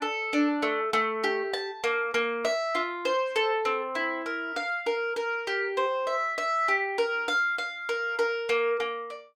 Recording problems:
none

